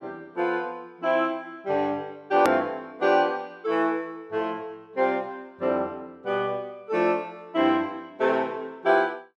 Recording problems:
click at an edit; at 2.5 s

